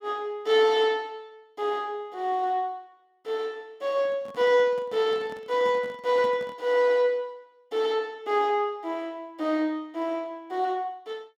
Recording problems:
handling noise; from 4 to 6.5 s; peak -10 dB vs average level

